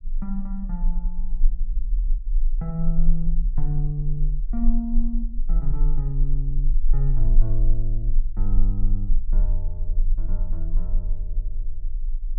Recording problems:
low-frequency rumble; below 32 Hz, strongest tone 18 Hz, SNR -5 dB

